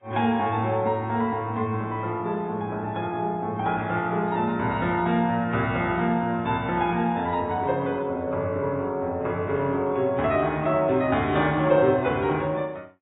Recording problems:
codec artefacts; AAC, then AAC, log-spectral distance 2 dB, nothing above 3.6 kHz

